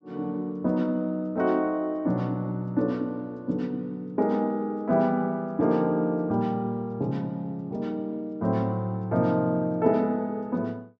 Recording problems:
low-pass filter; nothing above 8 kHz

